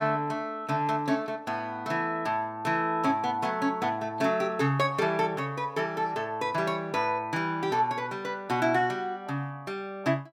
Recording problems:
none

